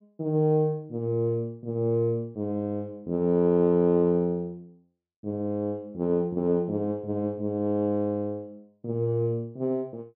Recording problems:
low-pass filter; nothing above 5.5 kHz

